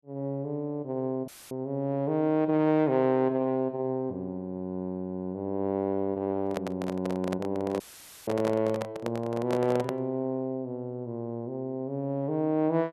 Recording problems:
dropout; at 1.5 s and at 8 s; filled with static
microphone handling noise; from 6.5 to 10 s; peak 0 dB vs average level

